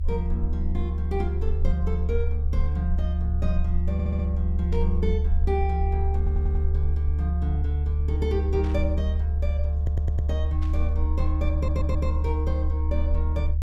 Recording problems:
low-frequency rumble; below 74 Hz, strongest tone 74 Hz, SNR -7 dB
audio stuttering; 4 times, first at 4 s
static burst; at 4.5 s, at 8.5 s and at 11 s; peak -10 dB vs average level

